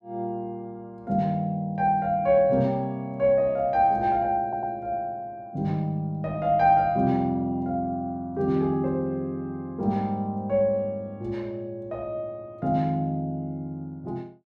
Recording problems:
stutter; at 4.5 s

